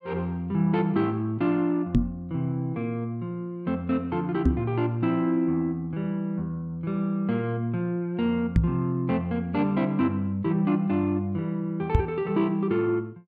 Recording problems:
microphone bump; 4 times, first at 2 s; peak +9 dB vs average level

